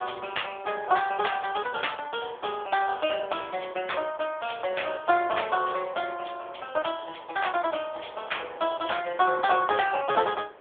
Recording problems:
telephone audio; 320 Hz to 3.5 kHz, AMR-NB
wind noise; below 1.1 kHz, SNR 20 dB

